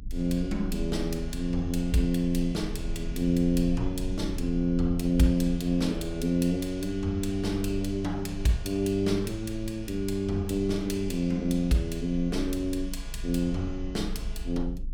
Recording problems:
rumble; below 52 Hz, strongest tone 26 Hz, SNR 11 dB

